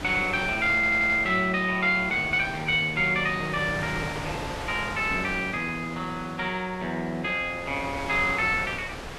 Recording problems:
wind noise; below 2.2 kHz, SNR 11 dB
stutter; at 1 s

